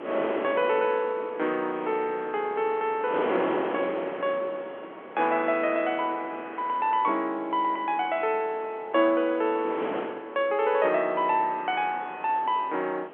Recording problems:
telephone audio; 260 Hz to 3.3 kHz, G.711
wind noise; below 1 kHz, SNR 11 dB

